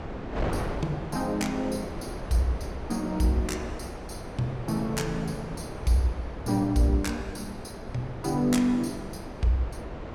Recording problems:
wind noise; below 680 Hz, SNR 8 dB

